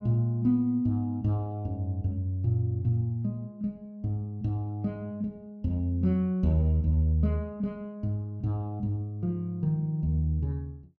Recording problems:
none

